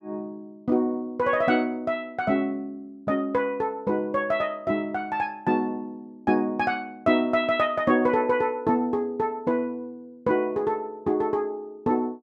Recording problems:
none

